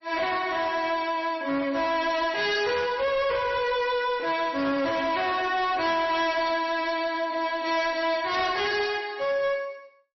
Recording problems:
lossy compression; MP3, then MP3, log-spectral distance 3 dB, nothing above 5.7 kHz
distortion; hard clipping, uneven, signal-to-distortion ratio 10 dB

